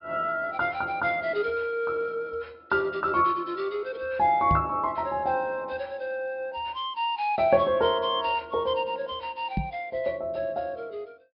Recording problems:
treble cut off; nothing above 5.1 kHz
knock on the microphone; at 4.5 s and at 9.5 s; peak +2 dB vs average level

